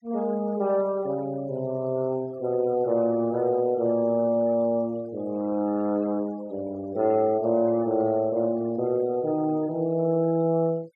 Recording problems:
noise reduction artefacts; signal-to-artefact ratio 26 dB

